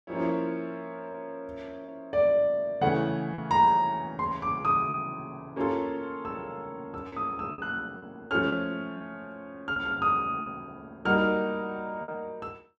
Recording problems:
lost packets; 4% of the sound replaced, filled with repeated pitch periods

